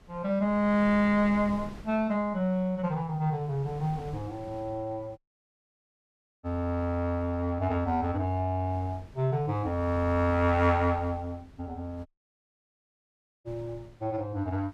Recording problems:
wind noise; below 340 Hz, SNR 20 dB
dropout; at 5 s for 1.5 s and at 12 s for 1.5 s

